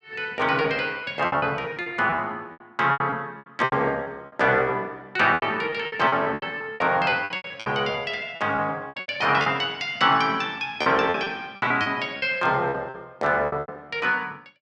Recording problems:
packet loss; 15% of the sound replaced, filled with repeated pitch periods

